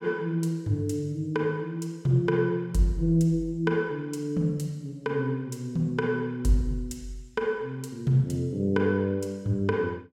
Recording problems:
none

